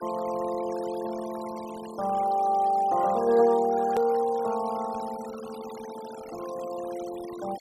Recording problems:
denoising artefacts; signal-to-artefact ratio 18 dB
click at an edit; at 4 s

